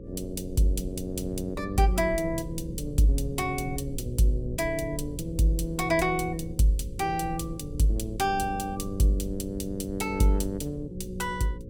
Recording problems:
mains hum; 60 Hz, harmonics up to 540 Hz, SNR 15 dB
low-frequency rumble; below 110 Hz, SNR 13 dB

